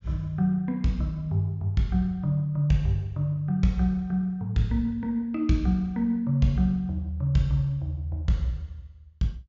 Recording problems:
low-pass filter; nothing above 7.4 kHz

